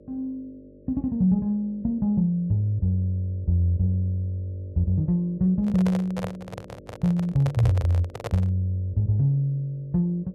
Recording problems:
electrical hum; 50 Hz, harmonics up to 600 Hz, SNR 24 dB
microphone handling noise; from 5.5 to 8.5 s; peak -3 dB vs average level

